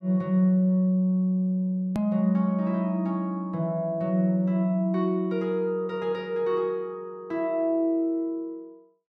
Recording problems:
edit click; at 2 s

